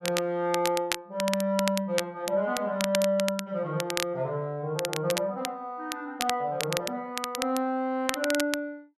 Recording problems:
crackling; vinyl, SNR 5 dB

